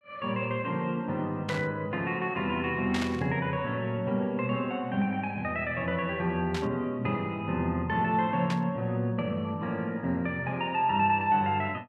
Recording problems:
static burst; 4 times, first at 1.5 s; peak -2 dB vs average level

